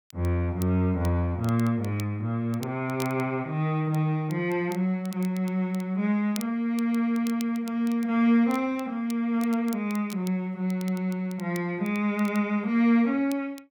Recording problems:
crackling; vinyl, SNR 21 dB

